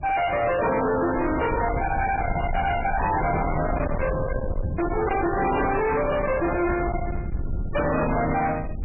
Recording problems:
lossy compression; MP3, log-spectral distance 5 dB, nothing above 2.4 kHz
distortion; hard clipping, uneven, signal-to-distortion ratio 5 dB
low-frequency rumble; below 530 Hz, SNR 6 dB

